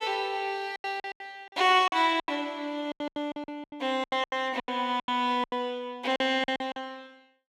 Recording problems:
packet loss; 17% of the sound replaced, filled with silence

